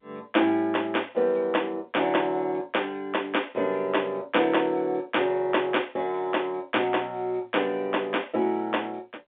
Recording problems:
telephone audio; 260 Hz to 3.5 kHz, G.711

